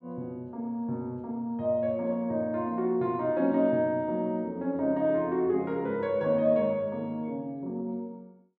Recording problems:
none

